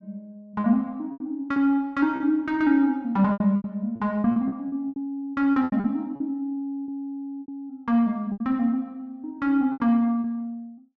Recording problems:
lost packets; 11% of the sound replaced, filled with repeated pitch periods

